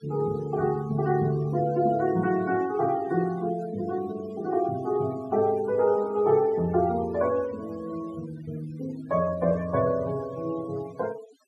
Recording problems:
noise reduction artefacts; signal-to-artefact ratio 20 dB

